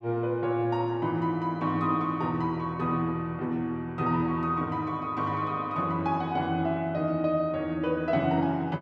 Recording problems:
none

